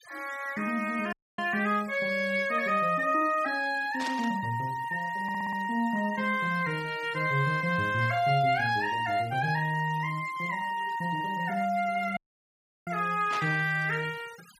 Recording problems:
denoising artefacts; signal-to-artefact ratio 21 dB
audio cutting out; at 1 s and at 12 s for 0.5 s
static burst; at 4 s and at 13 s; peak -5 dB vs average level
audio stuttering; at 5 s

